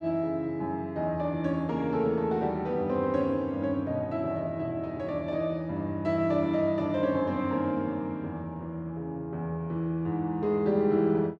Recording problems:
none

